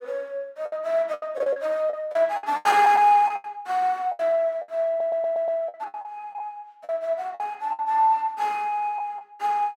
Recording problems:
packet loss; 12% of the sound replaced, filled with the last packet
audio stuttering; at 5 s

